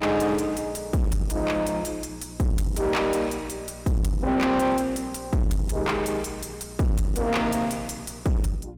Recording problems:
distorted audio; soft clipping, signal-to-distortion ratio 6 dB
electrical hum; 60 Hz, harmonics up to 420 Hz, SNR 19 dB

